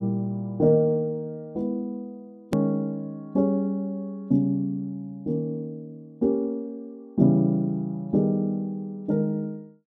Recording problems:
click at an edit; at 2.5 s

